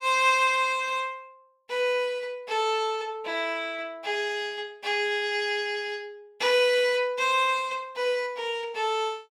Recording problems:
none

